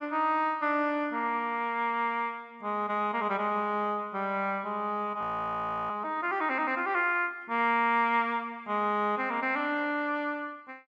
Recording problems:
frozen audio; at 5 s for 0.5 s

